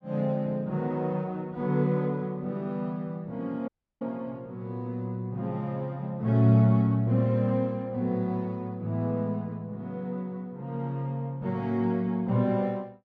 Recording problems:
audio cutting out; at 3.5 s

